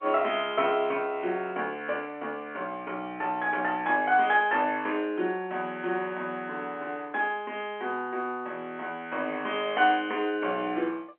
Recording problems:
telephone audio; 280 Hz to 3.3 kHz, G.711

